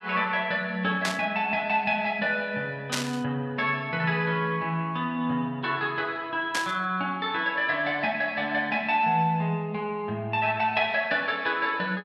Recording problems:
burst of static; at 1 s, at 3 s and at 6.5 s; peak +3 dB vs average level

